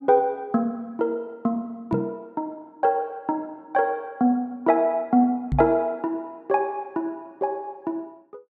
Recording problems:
microphone thump; at 2 s and at 5.5 s; peak +3 dB vs average level

